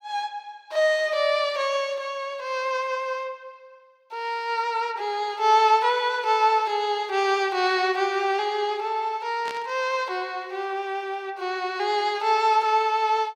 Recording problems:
burst of static; at 9.5 s; peak -9 dB vs average level

